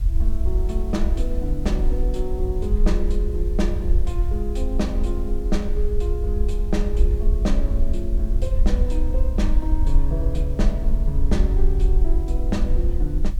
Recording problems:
hiss; slope -2 dB per octave, SNR 23 dB
rumble; below 52 Hz, SNR -5 dB

